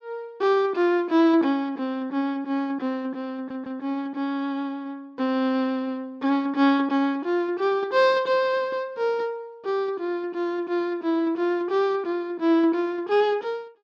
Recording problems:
stutter; at 3.5 s

